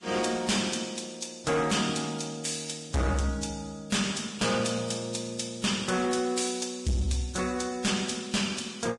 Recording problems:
lossy compression; Vorbis, log-spectral distance 5 dB, nothing above 10.1 kHz
distorted audio; hard clipping, signal-to-distortion ratio 7 dB

